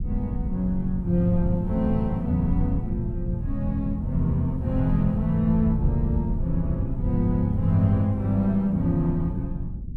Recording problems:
low-frequency rumble; below 130 Hz, SNR 5 dB

